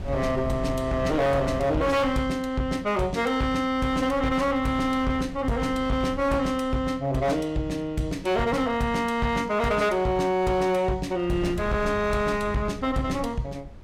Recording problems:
distortion; hard clipping, signal-to-distortion ratio 11 dB
wind noise; below 170 Hz, SNR 14 dB

